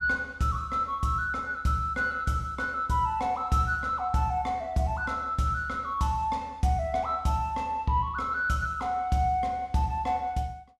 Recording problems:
none

